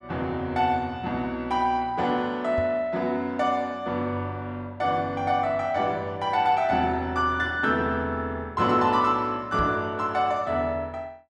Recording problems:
microphone bump; at 2.5 s and at 9.5 s; peak -2 dB vs average level

